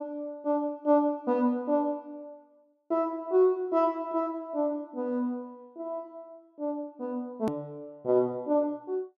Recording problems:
click at an edit; at 7.5 s

